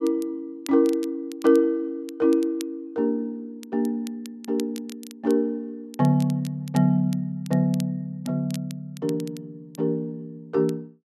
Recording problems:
crackle; vinyl, SNR 21 dB

